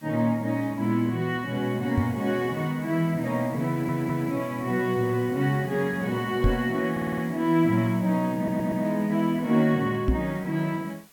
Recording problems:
hiss; slope -1 dB per octave, SNR 25 dB
microphone bump; at 2 s, at 6.5 s and at 10 s; peak +5 dB vs average level
audio stuttering; at 3.5 s, at 7 s and at 8.5 s

